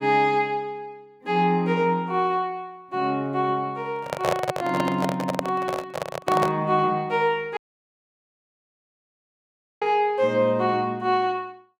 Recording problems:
microphone handling noise; from 4 to 6.5 s; peak +3 dB vs average level
audio cutting out; at 7.5 s for 2 s

